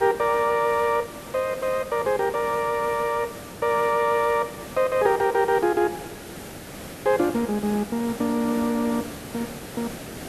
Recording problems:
hiss; SNR 14 dB

